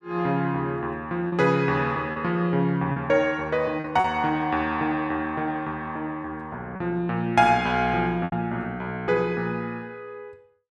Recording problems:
lost packets; 3% of the sound replaced, filled with repeated pitch periods

